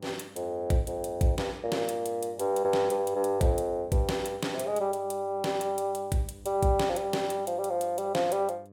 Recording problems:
electrical hum; 50 Hz, harmonics up to 1.1 kHz, SNR 24 dB

